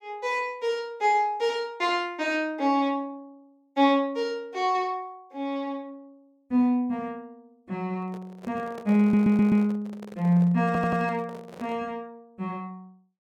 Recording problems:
handling noise; from 8 to 12 s; peak -12 dB vs average level
audio stuttering; at 9 s and at 11 s

